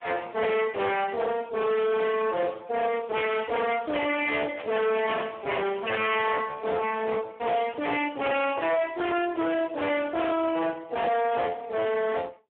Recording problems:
phone line; 240 Hz to 2.8 kHz, Speex
distortion; hard clipping, signal-to-distortion ratio 6 dB
burst of static; at 4.5 s and at 9.5 s; peak -11 dB vs average level

